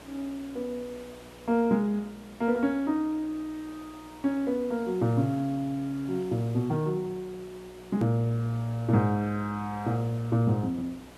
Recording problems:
electrical hum; 60 Hz, harmonics up to 660 Hz, SNR 24 dB
background hiss; SNR 22 dB
edit click; at 8 s

